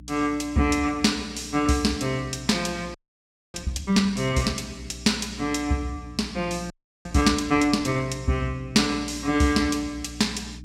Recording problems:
electrical hum; 60 Hz, harmonics up to 300 Hz, SNR 18 dB
frozen audio; at 3 s for 0.5 s and at 6.5 s

